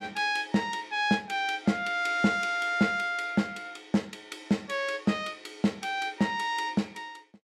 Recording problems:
none

